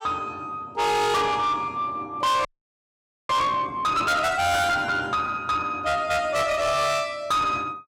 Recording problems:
distortion; soft clipping, signal-to-distortion ratio 6 dB
frozen audio; at 2.5 s for 1 s

